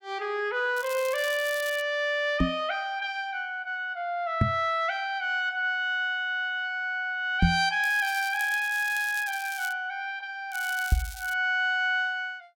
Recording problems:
crackling; from 1 to 2 s, from 8 to 9.5 s and at 11 s; loose cable, SNR 14 dB
microphone thump; 4 times, first at 2.5 s; peak +8 dB vs average level

